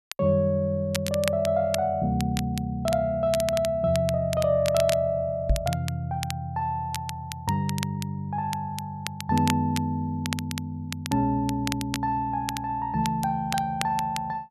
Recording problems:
crackle; vinyl, SNR 11 dB
microphone thump; at 5.5 s; peak +6 dB vs average level

